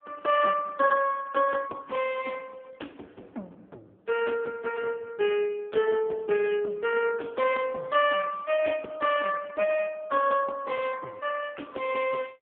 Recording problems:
telephone audio; 340 Hz to 3.3 kHz, AMR-NB

